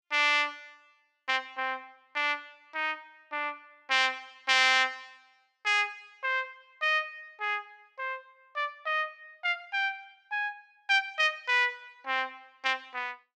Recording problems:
none

